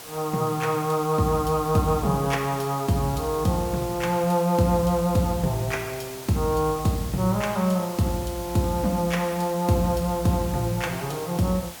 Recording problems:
background hiss; SNR 14 dB

